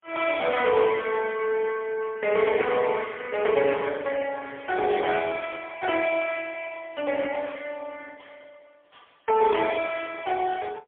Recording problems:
phone line; 300 Hz to 3.4 kHz, AMR-NB, then MP3

